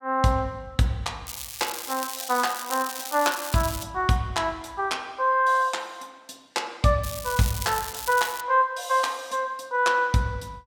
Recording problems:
crackling; from 1.5 to 4 s and from 7 to 8.5 s; loose cable, SNR 9 dB

